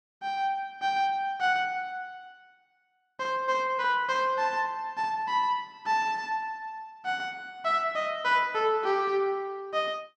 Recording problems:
none

